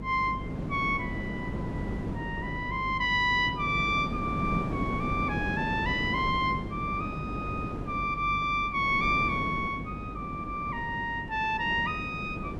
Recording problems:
hum; 50 Hz, harmonics up to 300 Hz, SNR 14 dB
wind on the microphone; below 370 Hz, SNR 7 dB

